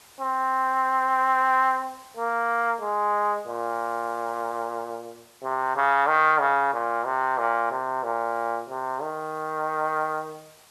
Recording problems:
background hiss; SNR 27 dB

